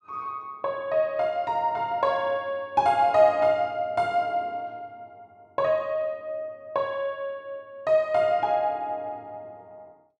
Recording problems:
none

